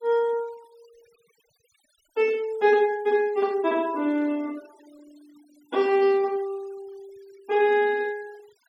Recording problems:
denoising artefacts; signal-to-artefact ratio 27 dB

